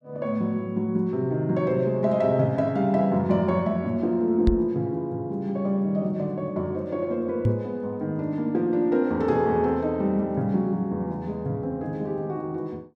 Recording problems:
microphone thump; at 4.5 s and at 7.5 s; peak +6 dB vs average level

